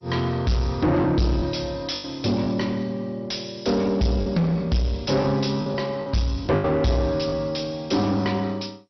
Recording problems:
lossy compression; MP2, log-spectral distance 4 dB, nothing above 5.7 kHz
distortion; soft clipping, signal-to-distortion ratio 7 dB
lost packets; 5% of the sound replaced, filled with the last packet

